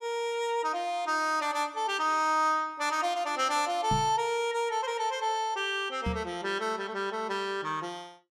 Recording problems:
microphone thump; at 4 s and at 6 s; peak 0 dB vs average level

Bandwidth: 15.5 kHz